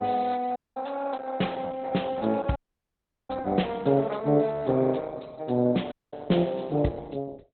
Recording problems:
codec artefacts; Opus, log-spectral distance 4 dB, nothing above 4 kHz
dropout; at 0.5 s, at 2.5 s for 0.5 s and at 6 s

